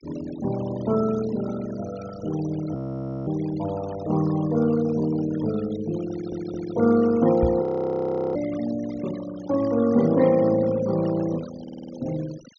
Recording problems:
treble cut off; nothing above 6.7 kHz
noise reduction artefacts; signal-to-artefact ratio 16 dB
audio freezing; at 3 s for 0.5 s and at 7.5 s for 0.5 s
audio stuttering; at 6 s and at 12 s
knock on the microphone; at 7.5 s; peak +2 dB vs average level

